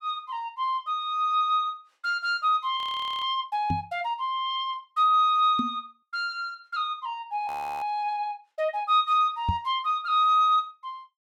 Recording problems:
audio freezing; at 3 s and at 7.5 s
microphone thump; at 3.5 s, at 5.5 s and at 9.5 s; peak +2 dB vs average level

